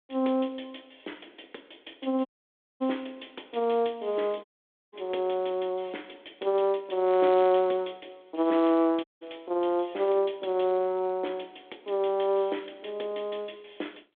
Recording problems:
telephone audio; 240 Hz to 3.6 kHz, G.726
audio cutting out; at 2.5 s for 0.5 s, at 4.5 s and at 9 s

